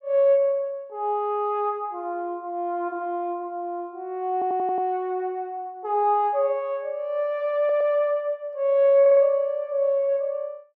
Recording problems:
audio stuttering; at 4.5 s, at 7.5 s and at 9 s

